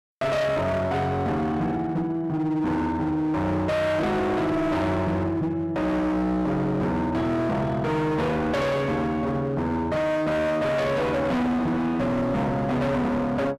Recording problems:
distorted audio; hard clipping, signal-to-distortion ratio 7 dB

